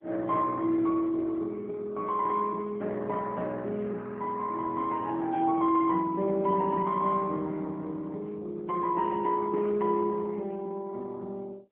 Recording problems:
phone line; 190 Hz to 2.1 kHz, AMR-NB

